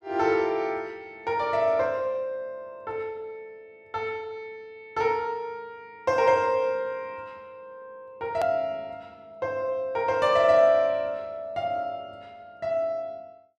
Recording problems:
edit click; at 8.5 s

